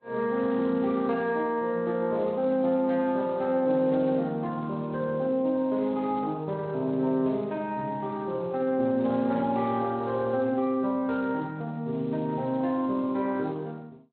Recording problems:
lossy codec; Vorbis, then Speex, log-spectral distance 2 dB, nothing above 4.1 kHz

